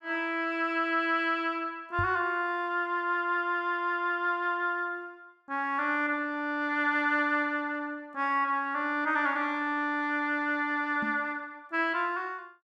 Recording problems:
microphone thump; at 2 s and at 11 s; peak -2 dB vs average level

